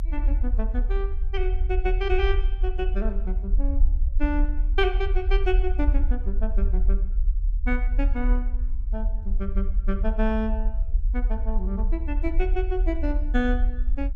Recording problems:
rumble; below 48 Hz, strongest tone 36 Hz, SNR -4 dB

